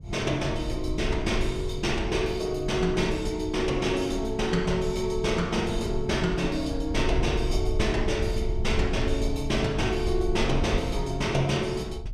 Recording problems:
rumble; below 70 Hz, SNR 7 dB

